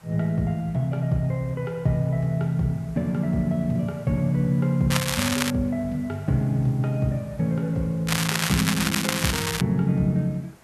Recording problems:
background hiss; slope -4 dB per octave, SNR 27 dB
crackling; at 5 s and from 8 to 9.5 s; loose cable, SNR 1 dB

